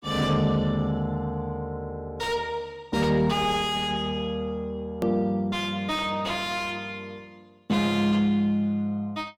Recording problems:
distortion; soft clipping, signal-to-distortion ratio 5 dB
click at an edit; at 5 s

